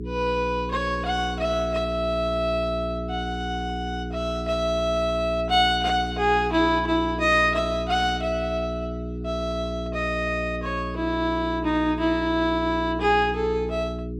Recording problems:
hum; 60 Hz, harmonics up to 420 Hz, SNR 8 dB

